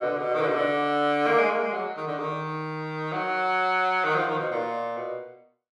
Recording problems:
none

